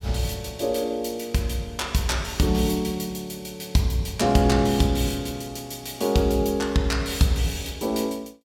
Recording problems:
none

